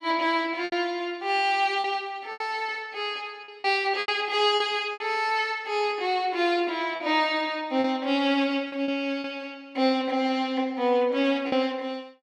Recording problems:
packet loss; 6% of the sound replaced, filled with repeated pitch periods

